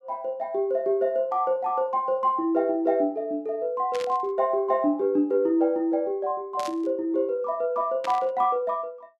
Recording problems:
burst of static; at 4 s, at 6.5 s and at 8 s; peak -7 dB vs average level

